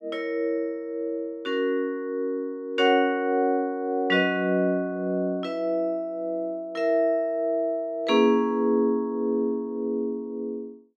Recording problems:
none

